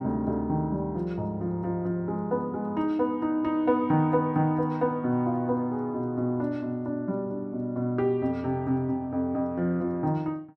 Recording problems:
none

